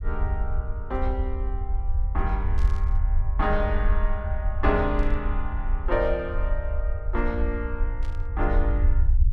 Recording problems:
rumble; below 64 Hz, SNR -3 dB
burst of static; at 2.5 s, at 5 s and at 8 s; peak -13 dB vs average level

